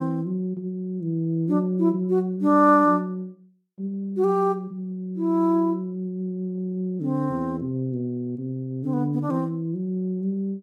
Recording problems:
none

